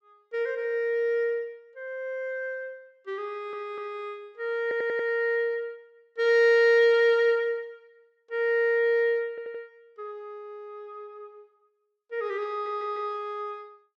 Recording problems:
stutter; 4 times, first at 3.5 s

